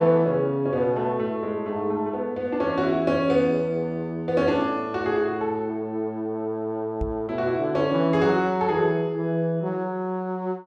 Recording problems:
knock on the microphone; at 7 s; peak -1 dB vs average level

